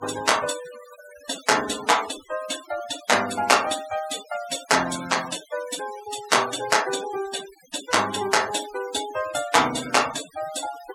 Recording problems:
noise reduction artefacts; signal-to-artefact ratio 14 dB

